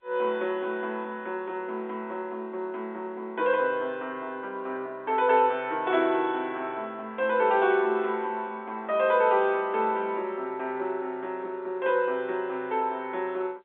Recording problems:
phone line; 280 Hz to 3.7 kHz, G.711

